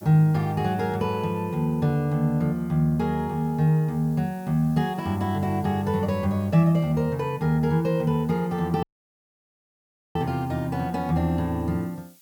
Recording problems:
hiss; SNR 28 dB
audio cutting out; at 9 s for 1.5 s

